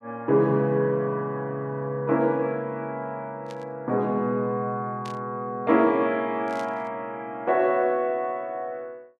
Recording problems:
burst of static; at 3.5 s, at 5 s and at 6.5 s; peak -13 dB vs average level

